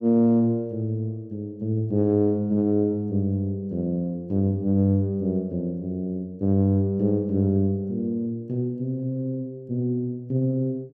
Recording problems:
none

